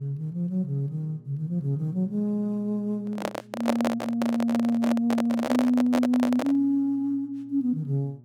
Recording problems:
hum; 60 Hz, harmonics up to 600 Hz, SNR 25 dB
handling noise; from 3 to 6.5 s; peak +4 dB vs average level

